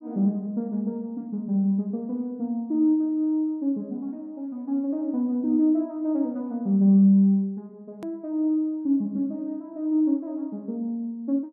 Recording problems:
hard cut with a click; at 8 s

